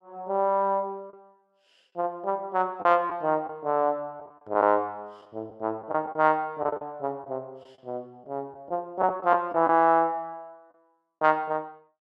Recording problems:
lost packets; 5% of the sound replaced, filled with the last packet

